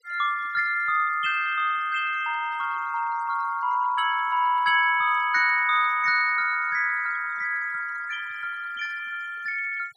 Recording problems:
noise reduction artefacts; signal-to-artefact ratio 21 dB

